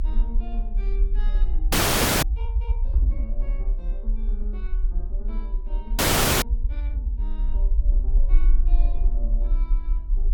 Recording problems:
low-frequency rumble; below 44 Hz, strongest tone 30 Hz, SNR -17 dB
frozen audio; at 1.5 s for 0.5 s and at 6 s

